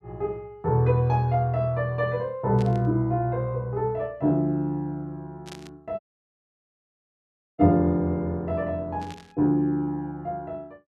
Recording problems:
static burst; at 2.5 s, at 5.5 s and at 9 s; peak -12 dB vs average level
audio cutting out; at 6 s for 1.5 s

